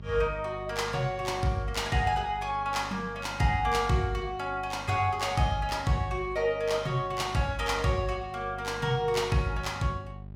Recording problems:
hum; 50 Hz, harmonics up to 600 Hz, SNR 16 dB

